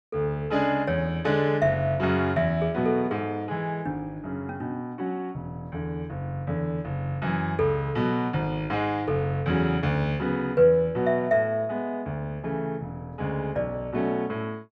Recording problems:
none

